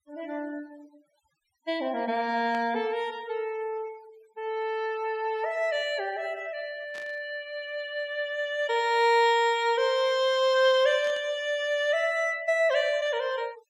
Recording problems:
noise reduction artefacts; signal-to-artefact ratio 24 dB
burst of static; at 2.5 s, at 7 s and at 11 s; peak -12 dB vs average level

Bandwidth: 16 kHz